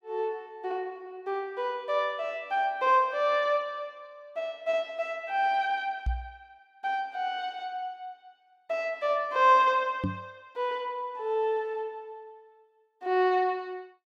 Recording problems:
knock on the microphone; at 6 s and at 10 s; peak +2 dB vs average level

